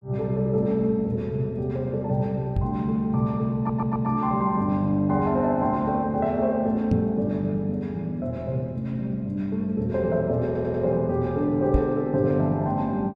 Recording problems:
microphone bump; at 2.5 s, at 7 s and at 12 s; peak +6 dB vs average level
stutter; at 3.5 s and at 10 s

